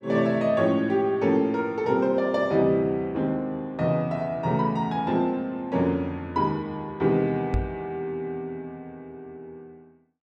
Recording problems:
microphone bump; at 7.5 s; peak +2 dB vs average level

